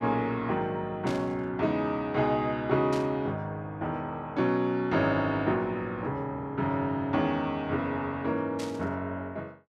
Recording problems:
static burst; at 1 s, at 3 s and at 8.5 s; peak -8 dB vs average level

